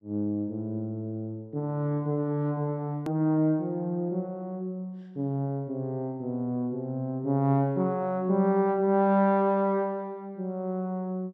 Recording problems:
edit click; at 3 s

